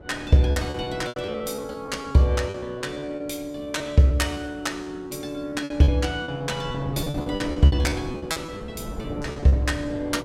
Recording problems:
hum; 60 Hz, harmonics up to 1.4 kHz, SNR 29 dB
wind noise; below 420 Hz, SNR 13 dB
packet loss; 15% of the sound replaced, filled with repeated pitch periods

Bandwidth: 16 kHz